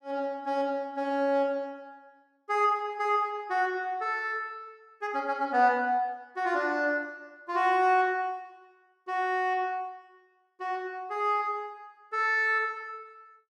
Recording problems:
none

